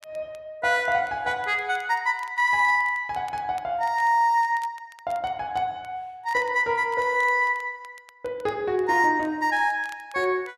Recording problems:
crackling; vinyl, SNR 29 dB

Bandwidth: 12.5 kHz